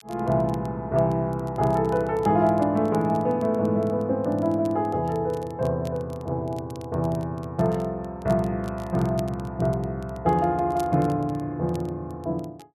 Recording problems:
crackle; vinyl, SNR 27 dB

